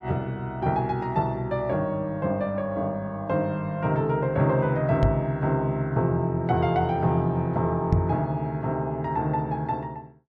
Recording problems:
microphone thump; at 5 s and at 8 s; peak +7 dB vs average level

